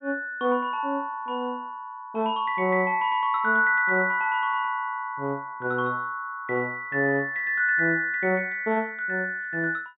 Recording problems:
treble missing; nothing above 4 kHz

